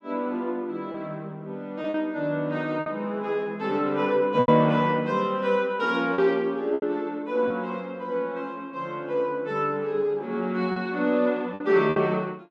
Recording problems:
lost packets; 4% of the sound replaced, filled with repeated pitch periods

